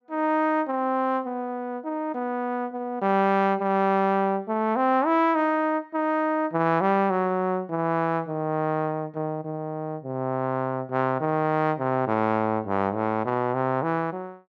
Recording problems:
none

